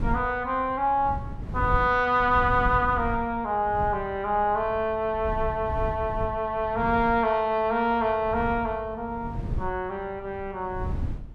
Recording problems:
wind on the microphone; below 130 Hz, SNR 11 dB

